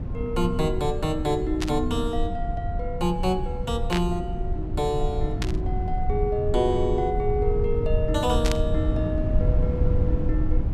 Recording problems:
low-frequency rumble; below 100 Hz, SNR 1 dB
static burst; 4 times, first at 1.5 s; peak +2 dB vs average level

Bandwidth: 14.5 kHz